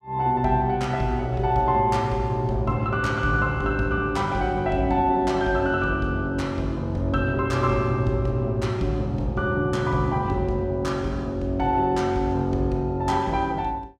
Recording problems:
none

